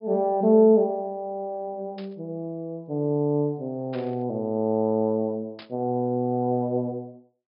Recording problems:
treble missing; nothing above 5.5 kHz
burst of static; at 2 s, at 4 s and at 5.5 s; peak -13 dB vs average level

